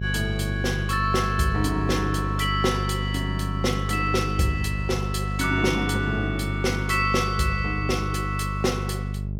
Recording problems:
hum; 50 Hz, harmonics up to 450 Hz, SNR 3 dB

